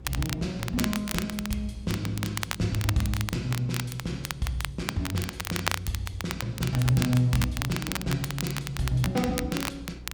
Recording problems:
mains hum; 60 Hz, harmonics up to 540 Hz, SNR 17 dB
wind on the microphone; below 340 Hz, SNR 26 dB
crackle; vinyl, SNR 6 dB

